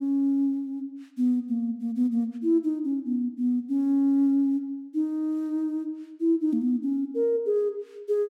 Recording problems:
none

